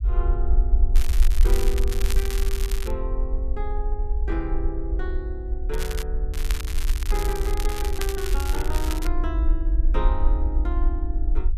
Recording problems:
rumble; below 52 Hz, SNR -7 dB
crackling; from 1 to 3 s, at 5.5 s and from 6.5 to 9 s; loose cable, SNR 3 dB

